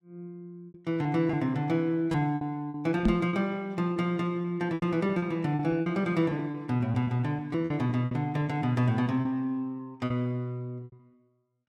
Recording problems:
lost packets; 12% of the sound replaced, filled with repeated pitch periods
microphone thump; at 3 s; peak +7 dB vs average level

